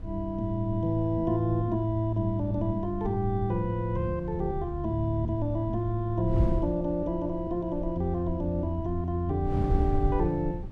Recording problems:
wind noise; below 96 Hz, SNR 7 dB

